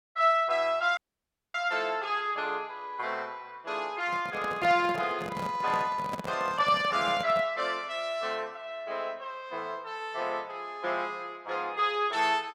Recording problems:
audio cutting out; at 1 s for 0.5 s
microphone handling noise; from 4 to 7.5 s; peak -3 dB vs average level

